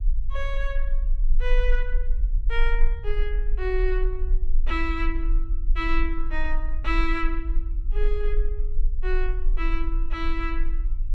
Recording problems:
low-frequency rumble; below 36 Hz, strongest tone 18 Hz, SNR -4 dB

